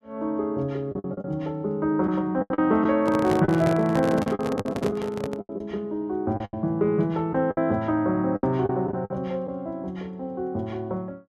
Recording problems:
packet loss; 9% of the sound replaced, filled with the last packet
handling noise; from 3 to 5.5 s; peak 0 dB vs average level

